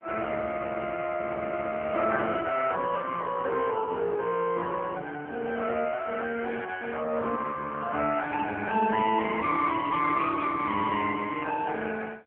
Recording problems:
telephone audio; 260 Hz to 3.3 kHz, AMR-NB

